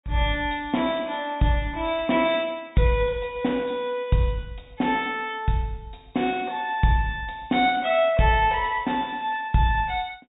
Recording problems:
low-pass filter; nothing above 4 kHz

